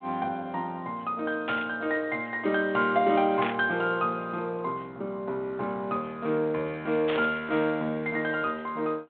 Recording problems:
phone line; 190 Hz to 3.8 kHz, G.726
static burst; at 1.5 s, at 3.5 s and at 7 s; peak -1 dB vs average level

